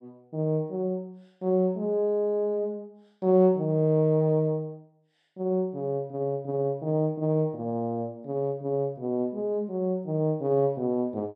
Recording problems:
none

